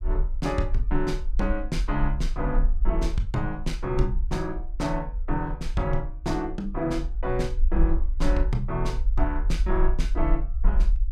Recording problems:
rumble; below 46 Hz, strongest tone 22 Hz, SNR 0 dB

